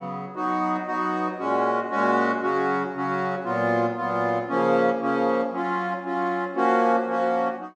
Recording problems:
none

